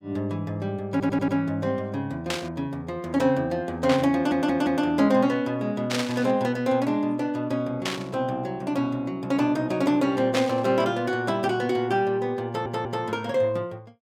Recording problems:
audio stuttering; at 1 s, at 4 s and at 12 s
static burst; 5 times, first at 2.5 s; peak +1 dB vs average level

